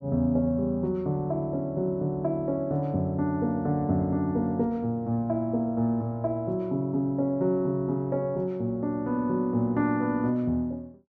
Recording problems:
none

